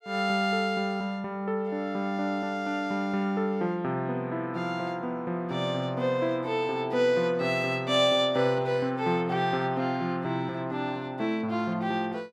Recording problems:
none

